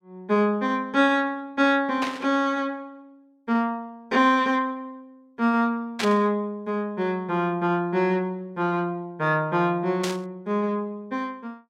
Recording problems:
burst of static; at 2 s, at 6 s and at 10 s; peak 0 dB vs average level

